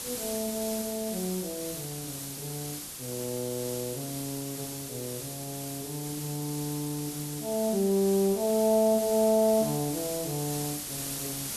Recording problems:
background hiss; SNR 6 dB

